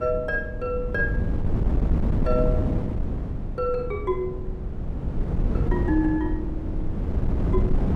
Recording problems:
wind noise; below 170 Hz, SNR -1 dB

